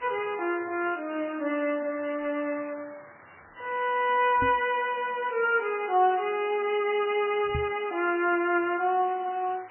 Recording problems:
lossy compression; MP3, log-spectral distance 12 dB, nothing above 2.4 kHz
background hiss; SNR 22 dB
knock on the microphone; at 4.5 s and at 7.5 s; peak -2 dB vs average level

